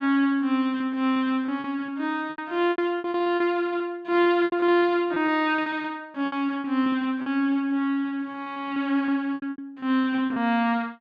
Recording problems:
lost packets; 13% of the sound replaced, filled with repeated pitch periods

